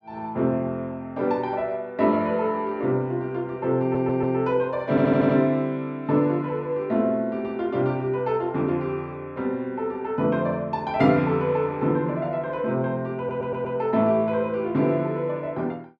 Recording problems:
audio stuttering; at 4 s, at 5 s and at 13 s

